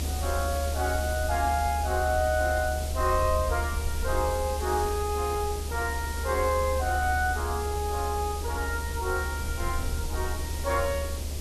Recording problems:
hiss; SNR 9 dB
low-frequency rumble; below 76 Hz, strongest tone 74 Hz, SNR 4 dB

